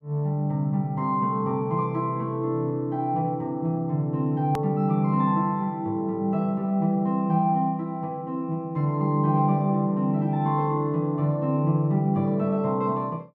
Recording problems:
edit click; at 4.5 s

